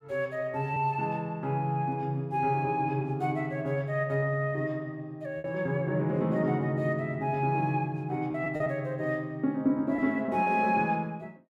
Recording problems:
packet loss; 2% of the sound replaced, filled with repeated pitch periods

